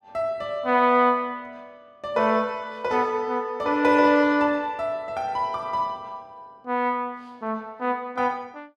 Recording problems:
none

